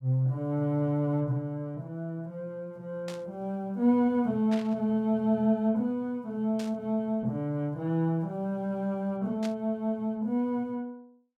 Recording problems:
static burst; 4 times, first at 3 s; peak -8 dB vs average level

